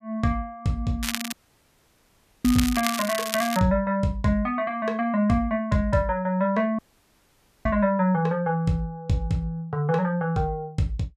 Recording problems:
crackling; from 1 to 3.5 s; loose cable, SNR 6 dB
dropout; at 1.5 s for 1 s and at 7 s for 1 s

